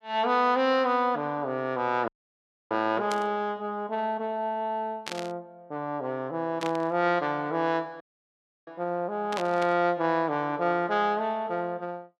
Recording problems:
dropout; at 2 s for 0.5 s and at 8 s for 0.5 s
static burst; 4 times, first at 3 s; peak -3 dB vs average level

